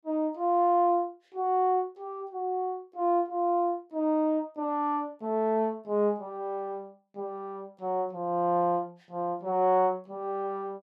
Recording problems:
none

